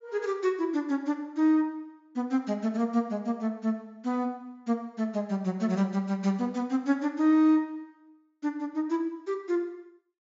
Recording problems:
low-pass filter; nothing above 7.3 kHz

